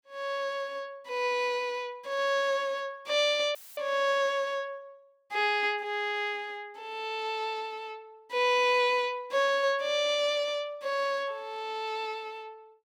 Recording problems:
dropout; at 3.5 s; filled with static

